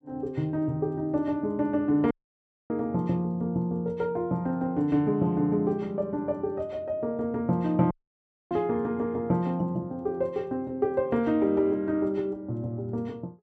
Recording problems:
audio cutting out; at 2 s for 0.5 s and at 8 s for 0.5 s

